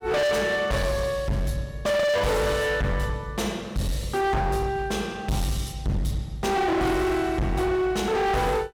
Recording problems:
distorted audio; hard clipping, signal-to-distortion ratio 6 dB

